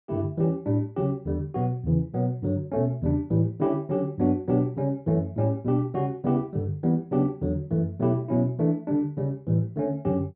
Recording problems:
none

